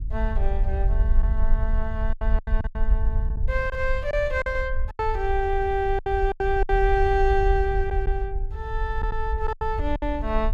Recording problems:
rumble; below 56 Hz, SNR 1 dB
lost packets; 8% of the sound replaced, filled with silence

